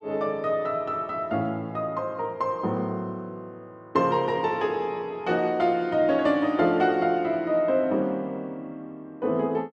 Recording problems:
none

